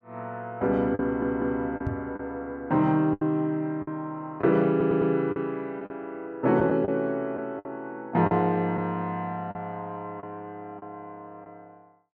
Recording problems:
packet loss; 6% of the sound replaced, filled with the last packet
audio stuttering; at 1 s and at 4.5 s
microphone thump; at 2 s; peak 0 dB vs average level

